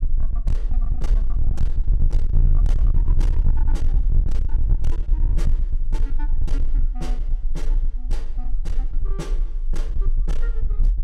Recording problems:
distorted audio; hard clipping, signal-to-distortion ratio 7 dB
rumble; below 38 Hz, strongest tone 22 Hz, SNR -16 dB

